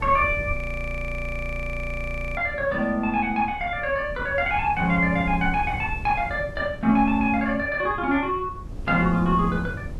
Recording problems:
wind on the microphone; below 120 Hz, SNR 12 dB
audio freezing; at 0.5 s for 2 s

